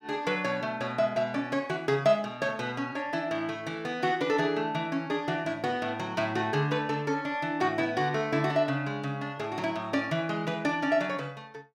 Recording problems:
none

